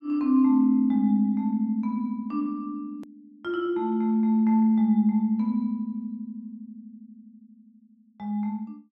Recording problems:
hard cut with a click; at 3 s

